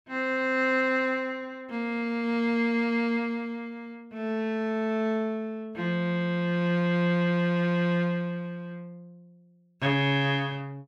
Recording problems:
none

